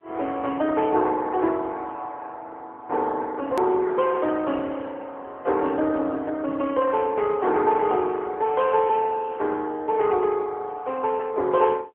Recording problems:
phone line; 280 Hz to 3.4 kHz, AMR-NB
edit click; at 3.5 s

